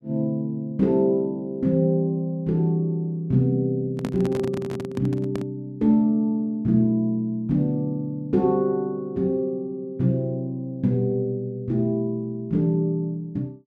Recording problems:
handling noise; from 4 to 5.5 s; peak -1 dB vs average level

